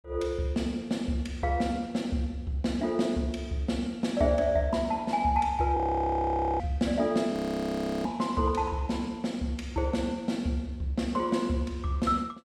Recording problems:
frozen audio; at 6 s for 1 s and at 7.5 s for 0.5 s

